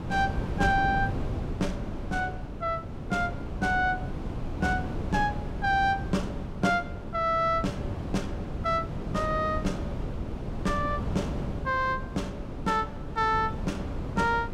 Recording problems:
wind on the microphone; below 280 Hz, SNR 6 dB

